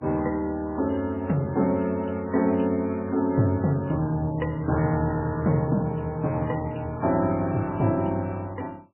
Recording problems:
lossy codec; MP3, log-spectral distance 4 dB, nothing above 2.9 kHz

